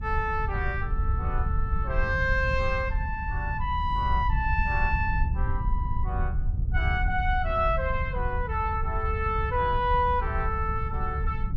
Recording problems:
rumble; below 88 Hz, SNR 5 dB
wind noise; below 78 Hz, SNR 4 dB

